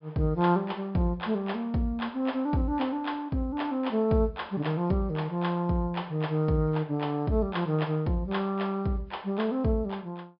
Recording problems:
low-pass filter; nothing above 5.5 kHz

